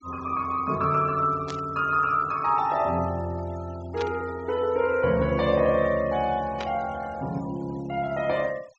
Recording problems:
treble missing; nothing above 8 kHz
denoising artefacts; signal-to-artefact ratio 22 dB
static burst; at 1.5 s, at 4 s and at 6.5 s; peak -6 dB vs average level

